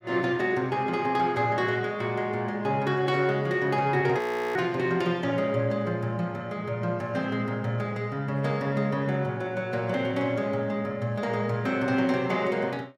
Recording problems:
audio freezing; at 4 s

